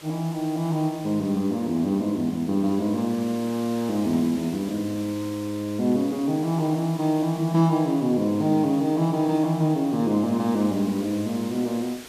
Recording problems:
background hiss; slope -2 dB per octave, SNR 19 dB

